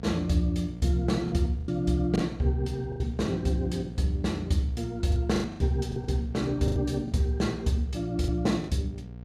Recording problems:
hum; 60 Hz, harmonics up to 720 Hz, SNR 14 dB
lost packets; 8% of the sound replaced, filled with the last packet

